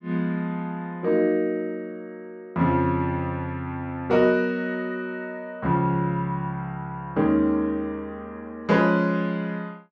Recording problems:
none

